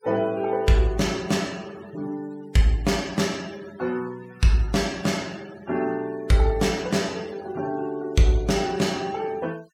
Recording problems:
noise reduction artefacts; signal-to-artefact ratio 21 dB

